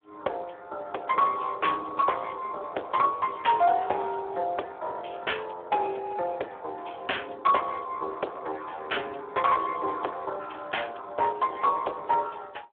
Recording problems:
phone line; 340 Hz to 3.5 kHz, Speex
distortion; hard clipping, uneven, signal-to-distortion ratio 15 dB

